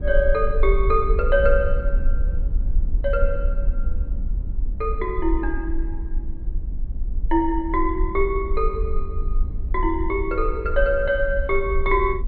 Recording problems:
low-pass filter; nothing above 4.4 kHz
low-frequency rumble; below 48 Hz, SNR 3 dB

